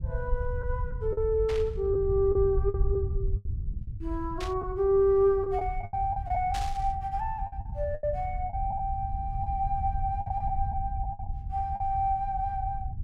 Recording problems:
low-frequency rumble; below 86 Hz, SNR 6 dB
lost packets; 7% of the sound replaced, filled with the last packet
burst of static; at 1.5 s, at 4.5 s and at 6.5 s; peak -5 dB vs average level

